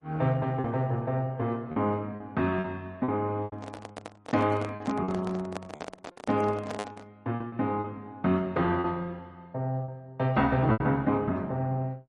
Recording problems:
lossy codec; MP3, then Opus, log-spectral distance 2 dB
lost packets; 7% of the sound replaced, filled with repeated pitch periods
microphone handling noise; from 3.5 to 7 s; peak -1 dB vs average level

